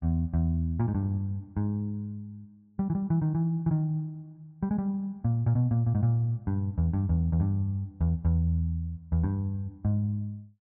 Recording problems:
treble cut off; nothing above 4.5 kHz

